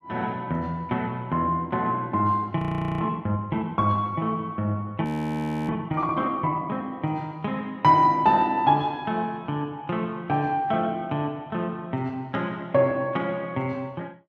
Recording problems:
frozen audio; at 2.5 s and at 5 s for 0.5 s

